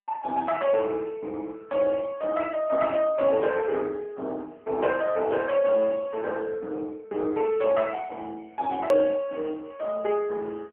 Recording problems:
phone line; 240 Hz to 3.3 kHz, AMR-NB
hard cut with a click; at 9 s

